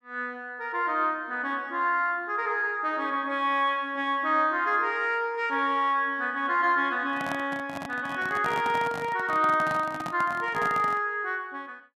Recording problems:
microphone handling noise; from 7 to 11 s; peak -4 dB vs average level

